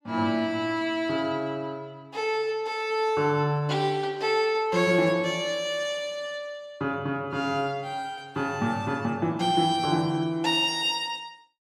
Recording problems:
none

